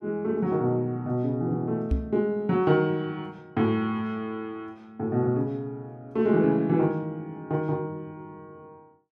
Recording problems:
knock on the microphone; at 2 s; peak +4 dB vs average level

